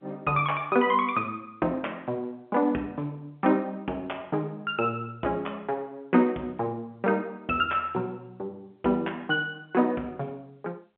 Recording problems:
phone line; 220 Hz to 3.3 kHz, G.711

